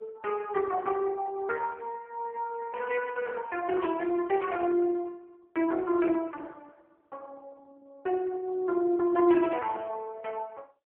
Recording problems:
telephone audio; 280 Hz to 3.3 kHz, AMR-NB

